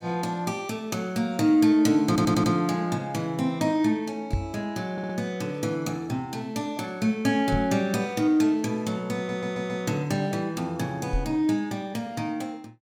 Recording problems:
audio stuttering; at 2 s, at 5 s and at 9 s
microphone bump; at 4.5 s, at 7.5 s and at 11 s; peak +3 dB vs average level

